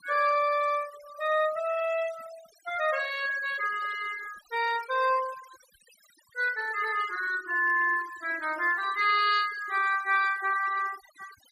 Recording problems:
denoising artefacts; signal-to-artefact ratio 16 dB

